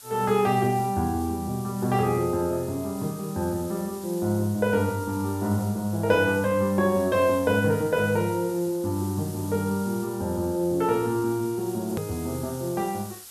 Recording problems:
background hiss; SNR 17 dB
click at an edit; at 12 s

